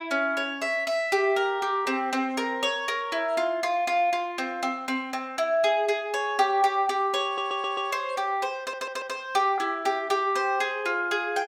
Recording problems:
audio stuttering; at 7.5 s and at 8.5 s

